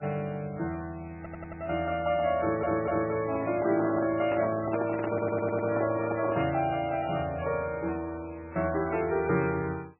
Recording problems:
lossy compression; MP3, log-spectral distance 4 dB, nothing above 2.4 kHz
stutter; at 1 s, at 2.5 s and at 5 s
microphone handling noise; from 3.5 to 6.5 s; peak 0 dB vs average level

